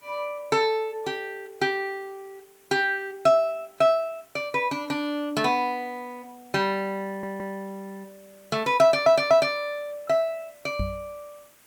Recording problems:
background hiss; SNR 30 dB
stutter; at 7 s and at 9 s
microphone thump; at 11 s; peak -2 dB vs average level

